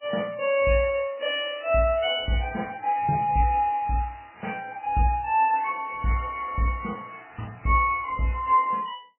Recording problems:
lossy codec; MP3, log-spectral distance 5 dB, nothing above 2.7 kHz

